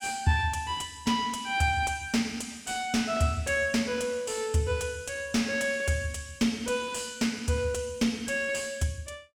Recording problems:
distortion; soft clipping, signal-to-distortion ratio 11 dB

